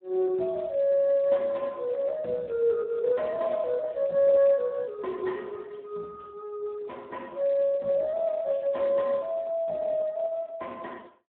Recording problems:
phone line; 240 Hz to 3.1 kHz, Speex

